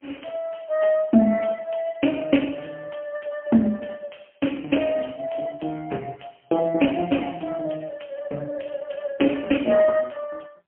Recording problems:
phone line; 190 Hz to 3.1 kHz, AMR-NB, then MP3

